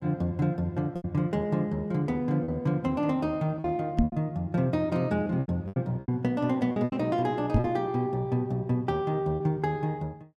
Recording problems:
lost packets; 7% of the sound replaced, filled with repeated pitch periods
microphone bump; at 4 s and at 7.5 s; peak +8 dB vs average level

